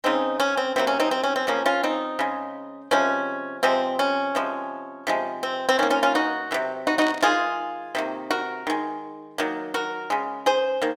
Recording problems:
static burst; at 7 s; peak -7 dB vs average level

